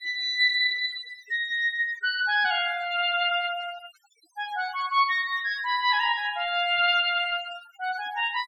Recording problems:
noise reduction artefacts; signal-to-artefact ratio 19 dB

